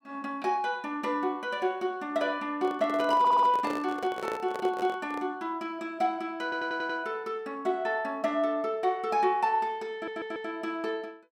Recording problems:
microphone handling noise; from 2.5 to 5.5 s; peak -2 dB vs average level
audio stuttering; at 3 s, at 6.5 s and at 10 s

